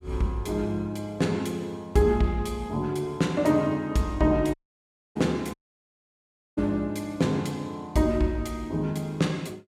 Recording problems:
audio cutting out; at 4.5 s for 0.5 s and at 5.5 s for 1 s

